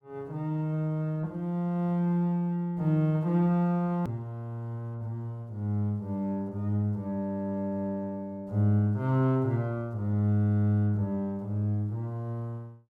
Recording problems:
edit click; at 4 s

